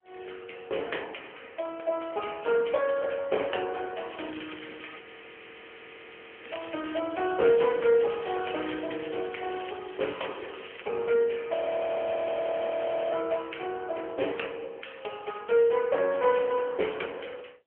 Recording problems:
phone line; 320 Hz to 3.3 kHz, AMR-NB
crackle; from 4 to 11 s; loose cable, SNR 17 dB
audio freezing; at 5 s for 1.5 s and at 12 s for 1.5 s

